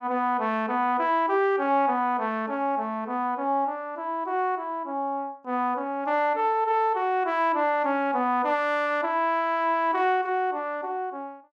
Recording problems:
none

